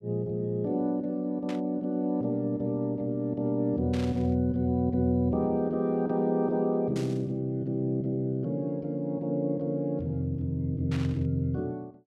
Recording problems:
burst of static; 4 times, first at 1.5 s; peak -9 dB vs average level

